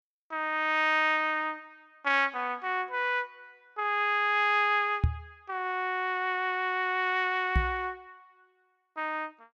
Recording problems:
microphone thump; at 5 s and at 7.5 s; peak +6 dB vs average level

